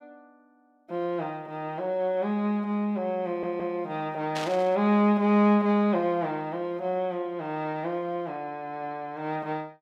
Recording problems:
audio stuttering; at 3.5 s
static burst; at 4.5 s; peak -3 dB vs average level

